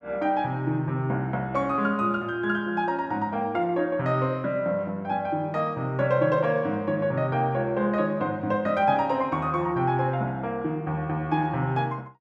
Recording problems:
none

